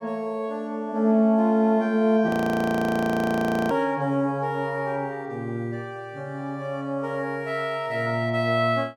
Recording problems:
audio freezing; at 2.5 s for 1.5 s

